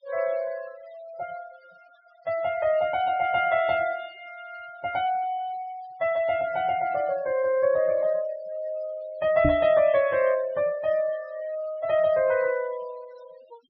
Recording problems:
treble missing; nothing above 5.5 kHz
noise reduction artefacts; signal-to-artefact ratio 21 dB
microphone bump; at 9.5 s; peak +3 dB vs average level

